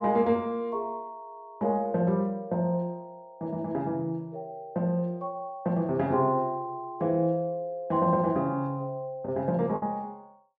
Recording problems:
packet loss; 0.8% of the sound replaced, filled with the last packet

